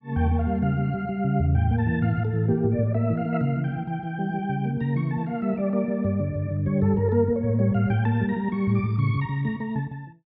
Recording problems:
none

